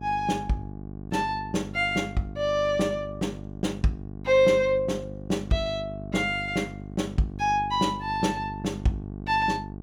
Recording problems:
electrical hum; 50 Hz, harmonics up to 800 Hz, SNR 12 dB

